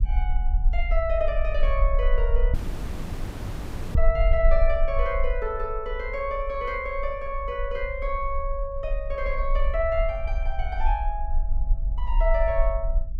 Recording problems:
low-frequency rumble; below 46 Hz, SNR 0 dB
dropout; at 2.5 s for 1.5 s

